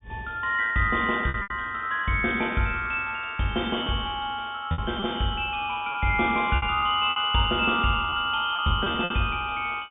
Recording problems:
low-pass filter; nothing above 3.6 kHz
lost packets; 6% of the sound replaced, filled with repeated pitch periods

